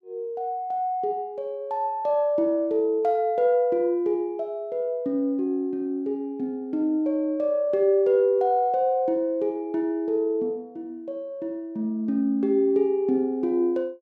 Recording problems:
none

